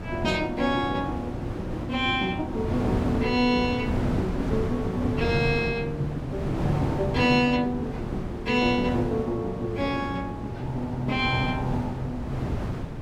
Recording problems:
wind on the microphone; below 380 Hz, SNR 5 dB

